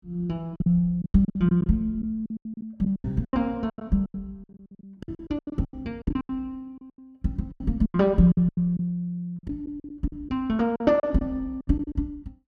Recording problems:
packet loss; 19% of the sound replaced, filled with silence

